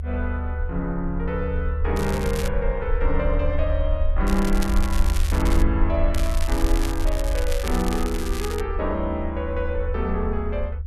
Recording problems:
low-frequency rumble; below 74 Hz, SNR 0 dB
crackling; at 2 s, from 4.5 to 5.5 s and from 6 to 8.5 s; loose cable, SNR 9 dB

